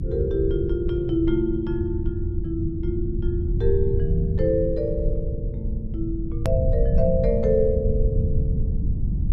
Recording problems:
hum; 50 Hz, harmonics up to 350 Hz, SNR 20 dB
rumble; below 100 Hz, SNR 1 dB
click at an edit; at 6.5 s

